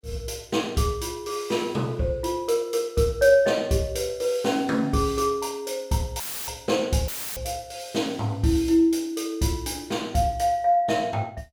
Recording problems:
audio cutting out; at 6 s and at 7 s; filled with static

